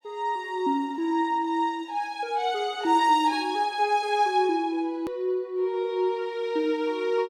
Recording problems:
edit click; at 5 s

